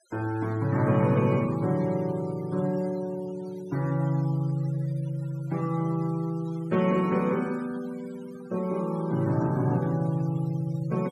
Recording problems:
denoising artefacts; signal-to-artefact ratio 22 dB

